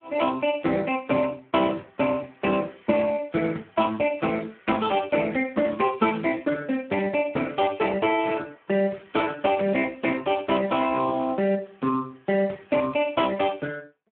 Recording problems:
telephone audio; 240 Hz to 3.3 kHz, Speex

